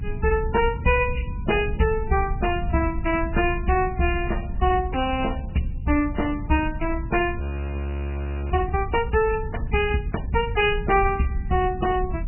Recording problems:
lossy compression; MP3, log-spectral distance 4 dB, nothing above 2.5 kHz
low-frequency rumble; below 90 Hz, SNR 7 dB
audio freezing; at 7.5 s for 1 s

